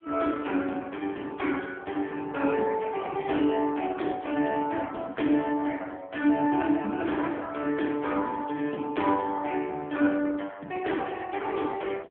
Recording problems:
phone line; 220 Hz to 3.4 kHz, AMR-NB

